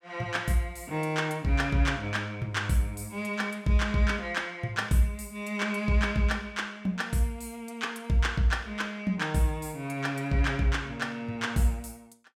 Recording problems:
none

